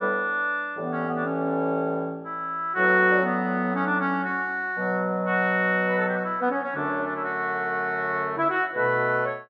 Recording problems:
none

